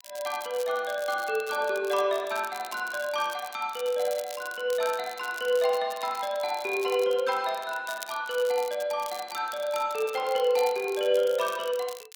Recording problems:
crackling; vinyl, SNR 16 dB

